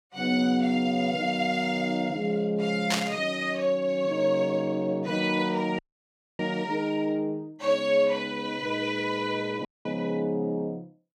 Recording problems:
burst of static; at 3 s; peak +4 dB vs average level
audio cutting out; at 6 s for 0.5 s and at 9.5 s

